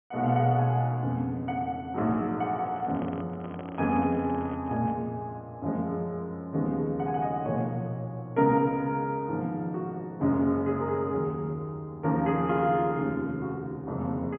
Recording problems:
low-pass filter; nothing above 3.2 kHz
microphone handling noise; from 2.5 to 5 s; peak -9 dB vs average level

